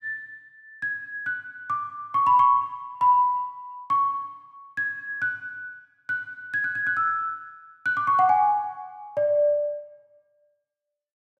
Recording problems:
none

